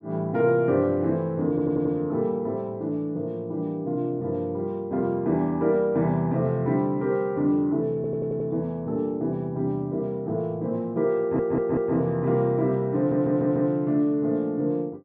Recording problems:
stutter; 4 times, first at 1.5 s

